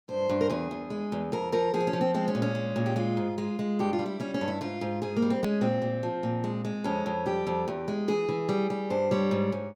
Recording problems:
hard cut with a click; at 5.5 s

